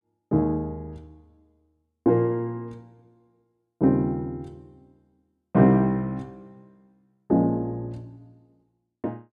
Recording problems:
none

